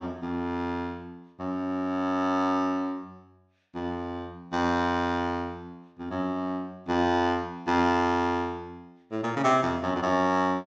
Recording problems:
none

